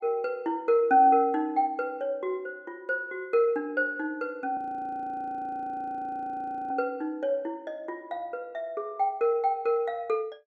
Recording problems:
frozen audio; at 4.5 s for 2 s

